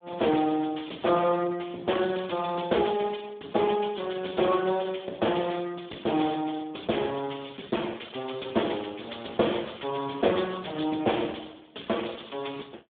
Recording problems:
telephone audio; 240 Hz to 3.5 kHz, Speex

